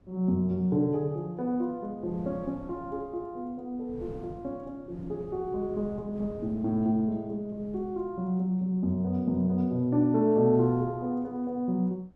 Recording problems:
wind on the microphone; below 270 Hz, SNR 20 dB

